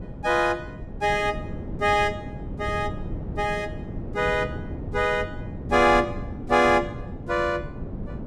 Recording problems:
wind on the microphone; below 260 Hz, SNR 11 dB

